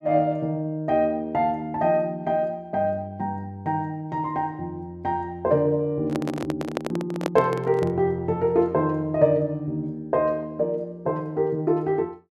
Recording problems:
handling noise; from 6 to 8 s; peak +3 dB vs average level

